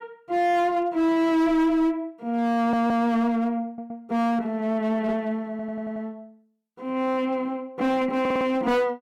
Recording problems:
distorted audio; hard clipping, uneven, signal-to-distortion ratio 7 dB
audio stuttering; 4 times, first at 2.5 s

